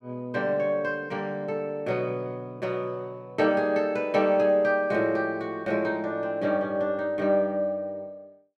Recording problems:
none

